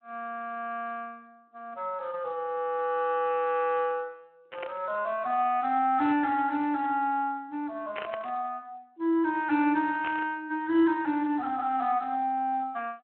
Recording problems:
telephone audio; 280 Hz to 3.7 kHz, Speex
static burst; at 4.5 s, at 8 s and at 10 s; peak -3 dB vs average level

